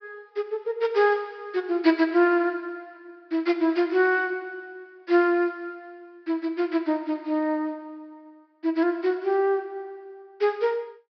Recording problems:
low-pass filter; nothing above 5.5 kHz

